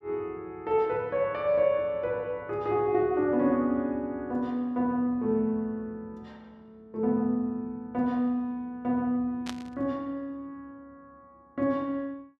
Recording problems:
burst of static; at 9.5 s; peak -5 dB vs average level

